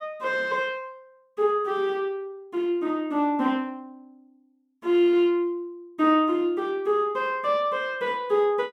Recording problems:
none

